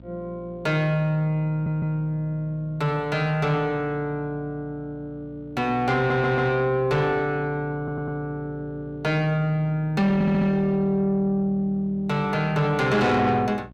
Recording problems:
distortion; soft clipping, signal-to-distortion ratio 12 dB
mains hum; 60 Hz, harmonics up to 660 Hz, SNR 22 dB
stutter; 4 times, first at 1.5 s

